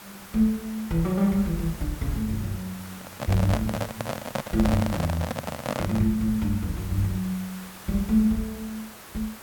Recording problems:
hiss; SNR 15 dB
handling noise; from 3 to 6 s; peak +3 dB vs average level

